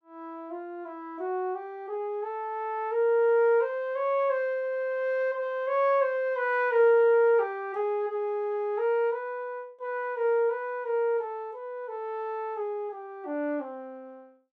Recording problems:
none

